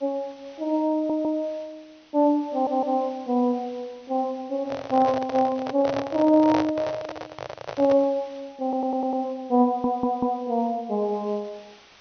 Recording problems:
treble cut off; nothing above 6.3 kHz
hiss; slope -1 dB per octave, SNR 28 dB
stutter; 4 times, first at 1 s
handling noise; from 4.5 to 8 s; peak +2 dB vs average level

